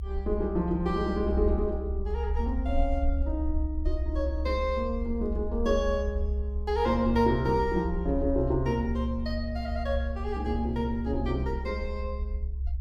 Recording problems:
rumble; below 68 Hz, strongest tone 66 Hz, SNR 3 dB

